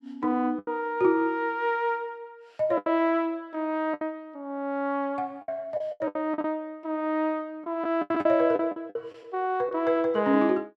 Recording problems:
packet loss; 8% of the sound replaced, filled with the last packet

